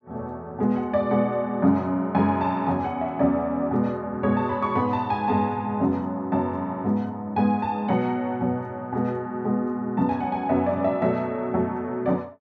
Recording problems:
none

